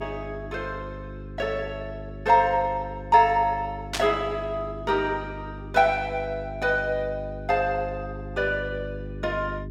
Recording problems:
hum; 50 Hz, harmonics up to 400 Hz, SNR 13 dB
static burst; at 4 s; peak +2 dB vs average level

